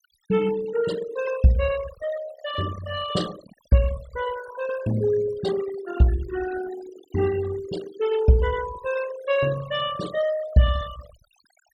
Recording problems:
noise reduction artefacts; signal-to-artefact ratio 13 dB

